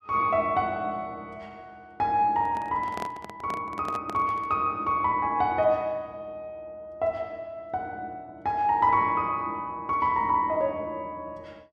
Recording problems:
microphone handling noise; from 2.5 to 4.5 s; peak -6 dB vs average level

